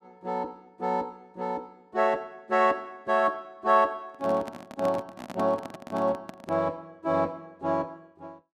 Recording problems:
handling noise; from 4 to 6.5 s; peak -3 dB vs average level

